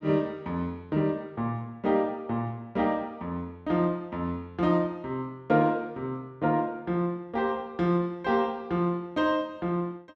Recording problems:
none

